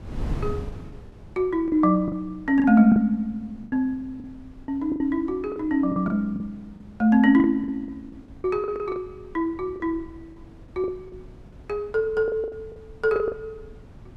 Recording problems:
wind noise; below 180 Hz, SNR 19 dB
lost packets; 12% of the sound replaced, filled with the last packet

